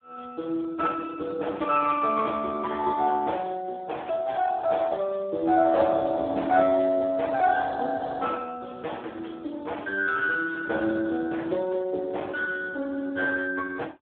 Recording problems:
telephone audio; 280 Hz to 2.2 kHz, Speex

